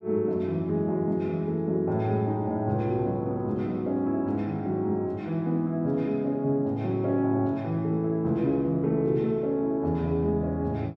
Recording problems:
none

